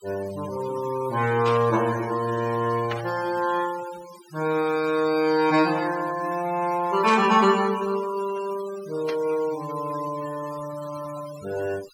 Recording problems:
noise reduction artefacts; signal-to-artefact ratio 16 dB
static burst; 4 times, first at 1.5 s; peak -4 dB vs average level

